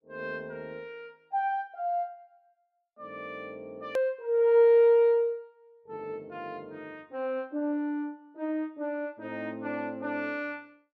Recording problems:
edit click; at 4 s

